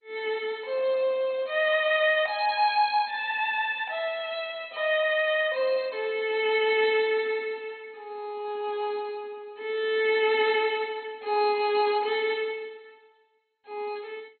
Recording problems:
lossy codec; MP2, log-spectral distance 3 dB, nothing above 3.6 kHz

